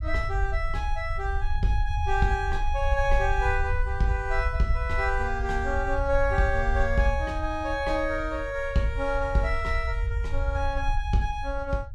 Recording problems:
low-frequency rumble; below 68 Hz, SNR 3 dB

